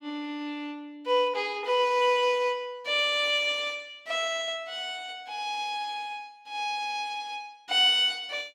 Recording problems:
none

